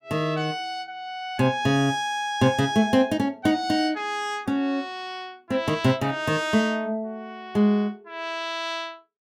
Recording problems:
none

